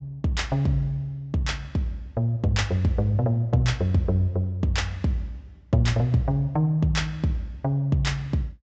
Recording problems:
treble cut off; nothing above 8 kHz

